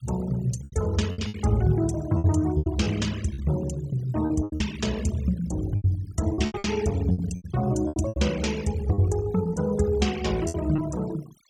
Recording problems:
noise reduction artefacts; signal-to-artefact ratio 18 dB
lost packets; 11% of the sound replaced, filled with repeated pitch periods

